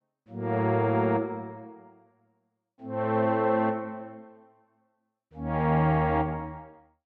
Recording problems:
none

